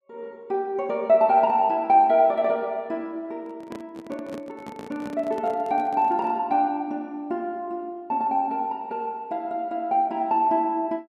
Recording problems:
microphone handling noise; from 3.5 to 6.5 s; peak -10 dB vs average level

